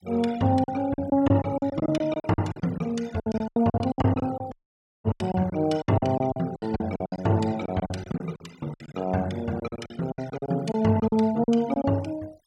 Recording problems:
denoising artefacts; signal-to-artefact ratio 22 dB
lost packets; 17% of the sound replaced, filled with silence
audio cutting out; at 4.5 s for 0.5 s

